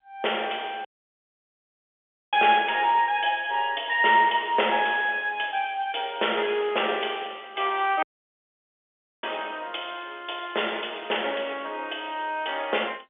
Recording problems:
telephone audio; 340 Hz to 3.5 kHz, G.711
dropout; at 1 s for 1.5 s and at 8 s for 1 s

